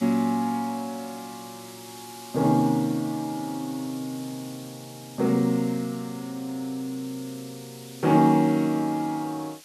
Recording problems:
background hiss; slope +3 dB per octave, SNR 18 dB

